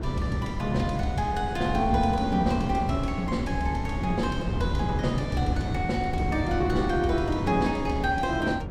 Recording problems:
wind noise; below 250 Hz, SNR 4 dB

